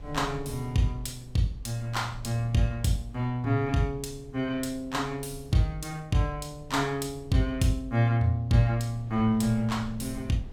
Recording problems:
wind noise; below 100 Hz, SNR 19 dB

